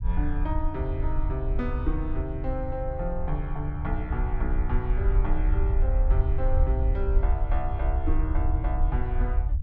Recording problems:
low-frequency rumble; below 64 Hz, SNR -5 dB

